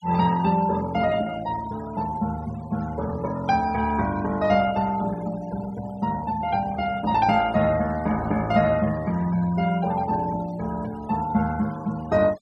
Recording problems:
denoising artefacts; signal-to-artefact ratio 18 dB

